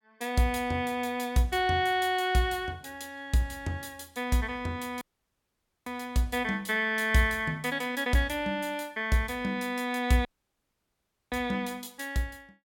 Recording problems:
audio cutting out; at 5 s for 1 s and at 10 s for 1 s

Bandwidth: 17.5 kHz